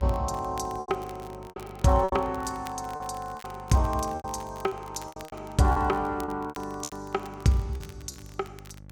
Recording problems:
hum; 50 Hz, harmonics up to 850 Hz, SNR 18 dB
crackle; vinyl, SNR 22 dB
packet loss; 11% of the sound replaced, filled with repeated pitch periods

